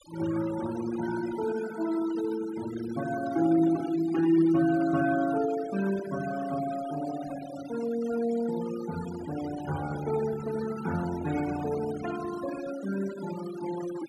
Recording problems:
noise reduction artefacts; signal-to-artefact ratio 14 dB

